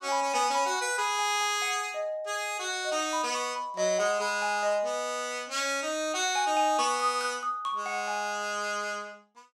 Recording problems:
none

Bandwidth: 15 kHz